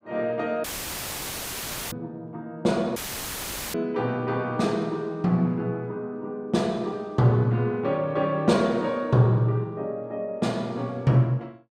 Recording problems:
audio cutting out; at 0.5 s for 1.5 s and at 3 s for 1 s; filled with static

